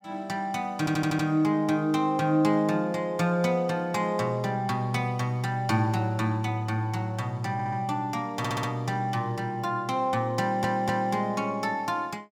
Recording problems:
audio stuttering; 4 times, first at 1 s

